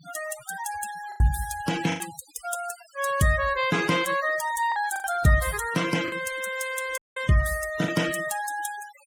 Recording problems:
noise reduction artefacts; signal-to-artefact ratio 13 dB
packet loss; 4% of the sound replaced, filled with the last packet
audio cutting out; at 7 s

